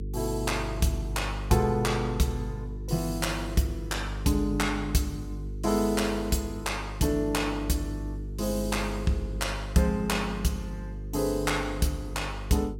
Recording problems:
hum; 50 Hz, harmonics up to 450 Hz, SNR 8 dB

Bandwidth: 16.5 kHz